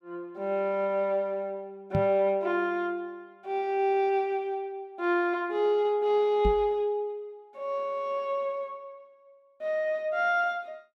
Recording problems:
microphone thump; at 2 s and at 6.5 s; peak +3 dB vs average level

